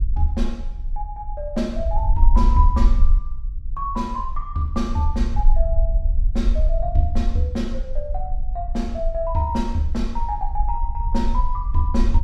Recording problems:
rumble; below 48 Hz, strongest tone 22 Hz, SNR -1 dB

